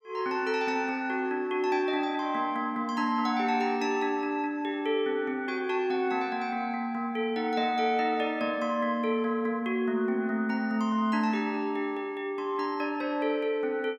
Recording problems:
none

